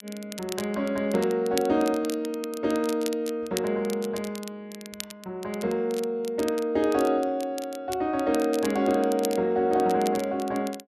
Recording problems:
crackle; vinyl, SNR 15 dB

